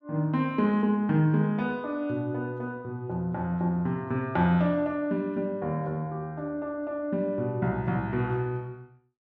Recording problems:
none

